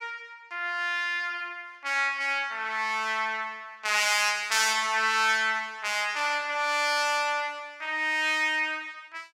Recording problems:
none

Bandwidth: 16 kHz